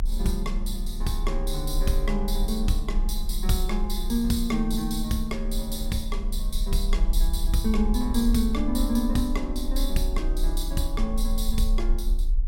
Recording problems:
low-frequency rumble; below 38 Hz, strongest tone 30 Hz, SNR 1 dB
wind noise; below 130 Hz, SNR 17 dB

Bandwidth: 16.5 kHz